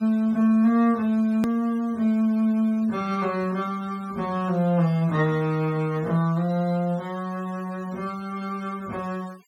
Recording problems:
noise reduction artefacts; signal-to-artefact ratio 26 dB
edit click; at 1.5 s

